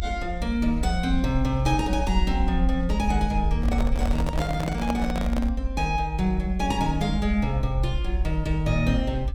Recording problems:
low-frequency rumble; below 62 Hz, SNR 3 dB
handling noise; from 3.5 to 5.5 s; peak +1 dB vs average level

